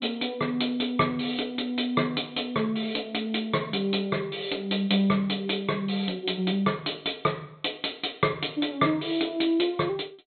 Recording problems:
treble cut off; nothing above 4.2 kHz

